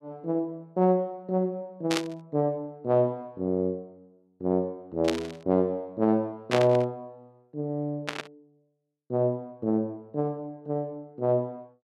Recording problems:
static burst; 4 times, first at 2 s; peak +3 dB vs average level

